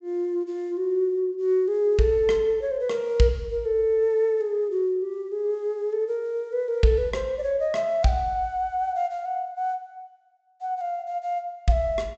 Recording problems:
low-pass filter; nothing above 8 kHz

